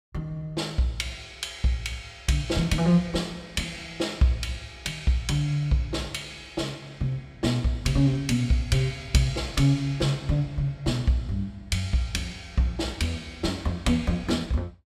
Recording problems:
none

